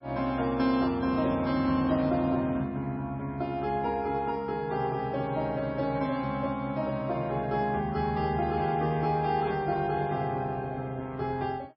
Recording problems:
lossy compression; MP3, log-spectral distance 2 dB, nothing above 4.9 kHz

